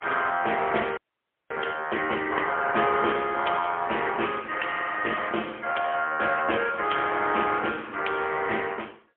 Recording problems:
telephone audio; 260 Hz to 3.3 kHz, AMR-NB, then MP3
audio freezing; at 1 s for 0.5 s

